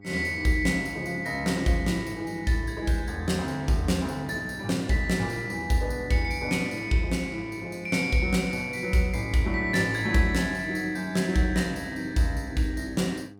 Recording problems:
electrical hum; 50 Hz, harmonics up to 1.2 kHz, SNR 19 dB

